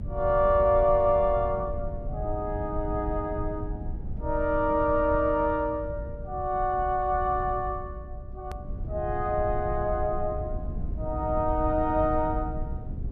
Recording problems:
rumble; below 100 Hz, SNR 9 dB
edit click; at 8.5 s

